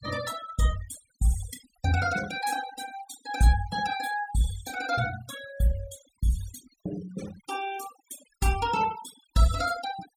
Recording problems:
noise reduction artefacts; signal-to-artefact ratio 14 dB

